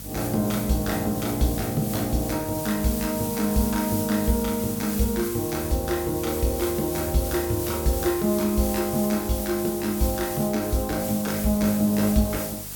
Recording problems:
mains hum; 50 Hz, harmonics up to 750 Hz, SNR 18 dB
hiss; slope 0 dB per octave, SNR 7 dB

